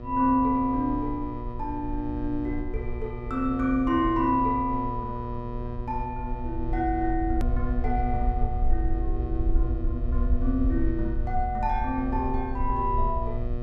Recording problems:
electrical hum; 60 Hz, harmonics up to 1.3 kHz, SNR 9 dB
rumble; below 60 Hz, SNR 4 dB
hard cut with a click; at 7.5 s

